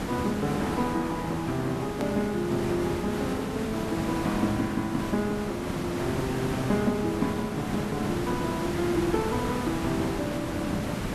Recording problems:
background hiss; slope -6 dB per octave, SNR 2 dB
hard cut with a click; at 2 s

